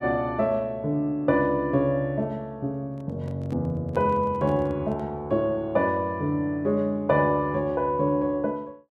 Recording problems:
handling noise; from 3 to 5 s; peak -11 dB vs average level

